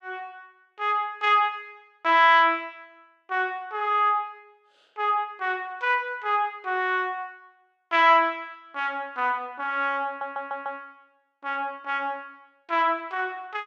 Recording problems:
audio stuttering; at 10 s

